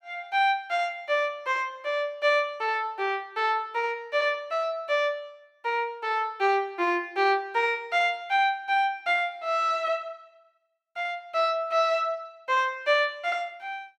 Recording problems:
none

